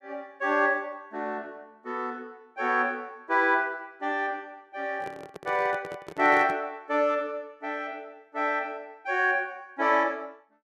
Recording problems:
microphone handling noise; from 5 to 6.5 s; peak -6 dB vs average level

